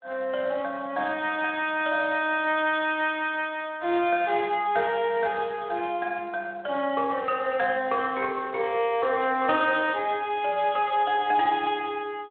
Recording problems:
telephone audio; 280 Hz to 3.4 kHz, Speex

